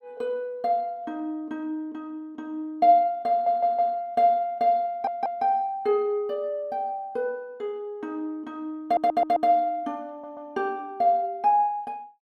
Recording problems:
stutter; 4 times, first at 3.5 s

